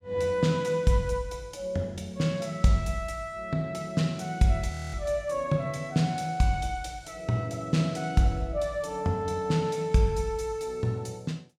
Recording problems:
audio freezing; at 4.5 s

